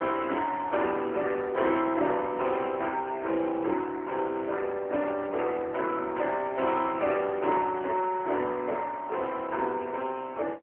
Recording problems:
telephone audio; 280 Hz to 3.3 kHz, AMR-NB

